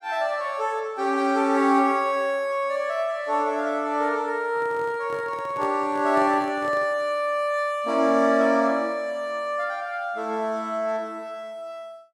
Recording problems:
microphone handling noise; from 4.5 to 7 s; peak -10 dB vs average level

